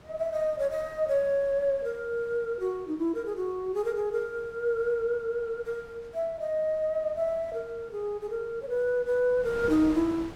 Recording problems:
wind on the microphone; below 1.1 kHz, SNR 20 dB

